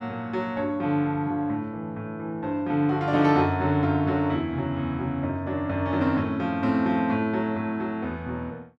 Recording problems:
none

